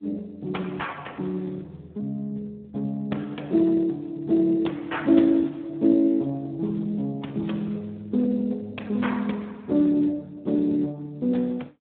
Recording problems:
phone line; 170 Hz to 3.4 kHz, Speex

